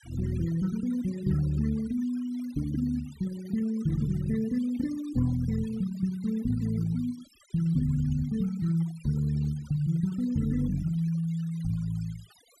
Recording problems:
denoising artefacts; signal-to-artefact ratio 22 dB

